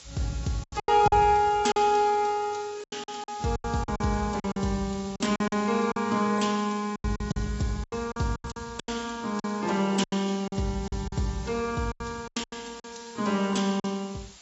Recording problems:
lossy compression; AAC, log-spectral distance 13 dB, nothing above 7.8 kHz
background hiss; slope +1 dB per octave, SNR 19 dB
lost packets; 13% of the sound replaced, filled with silence

